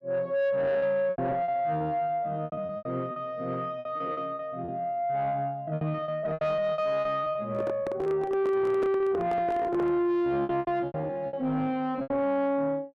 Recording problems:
distorted audio; soft clipping, signal-to-distortion ratio 10 dB
lost packets; 13% of the sound replaced, filled with repeated pitch periods
handling noise; from 7.5 to 10 s; peak +1 dB vs average level

